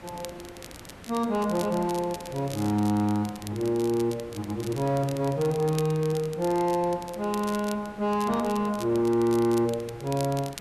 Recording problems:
distorted audio; soft clipping, signal-to-distortion ratio 11 dB
hiss; slope -6 dB per octave, SNR 19 dB
crackling; vinyl, SNR 17 dB

